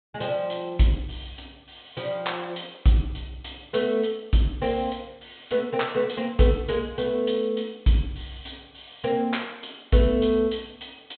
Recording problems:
treble missing; nothing above 4 kHz

